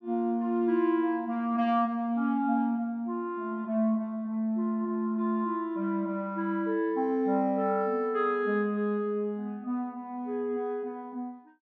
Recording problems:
none

